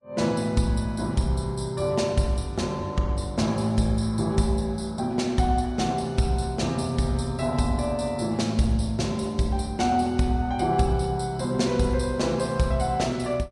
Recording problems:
lossy codec; Vorbis, log-spectral distance 3 dB, nothing above 10.1 kHz

